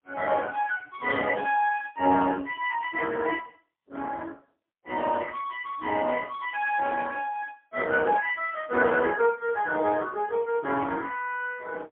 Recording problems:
telephone audio; 220 Hz to 3 kHz, AMR-NB, then MP3

